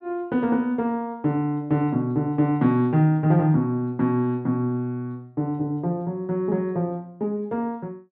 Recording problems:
none

